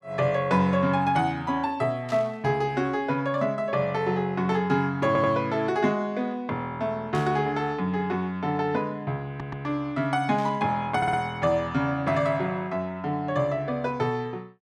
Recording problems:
static burst; at 2 s, at 7 s and at 10 s; peak -12 dB vs average level
stutter; at 5 s, at 9.5 s and at 11 s

